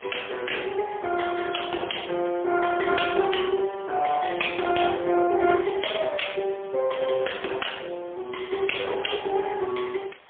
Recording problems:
telephone audio; 260 Hz to 3.4 kHz, AMR-NB, then MP3
hiss; SNR 24 dB

